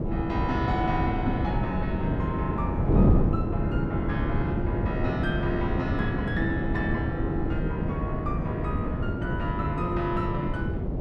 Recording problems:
hum; 50 Hz, harmonics up to 550 Hz, SNR 17 dB
wind noise; below 270 Hz, SNR -3 dB

